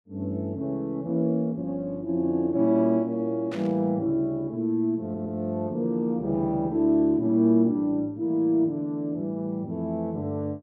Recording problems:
static burst; at 3.5 s; peak -10 dB vs average level
audio stuttering; at 5 s

